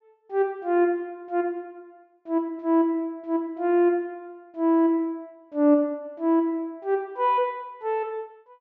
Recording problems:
treble cut off; nothing above 7.6 kHz

